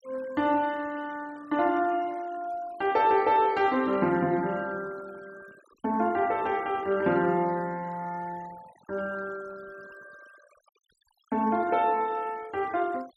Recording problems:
denoising artefacts; signal-to-artefact ratio 25 dB

